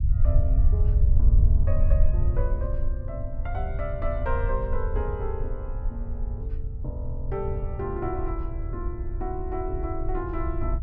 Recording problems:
rumble; below 72 Hz, SNR -7 dB

